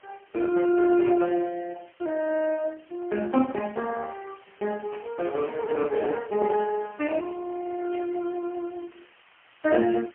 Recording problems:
telephone audio; 220 Hz to 2.8 kHz, AMR-NB, then MP3
background hiss; SNR 28 dB
burst of static; at 5 s and at 8 s; peak -12 dB vs average level

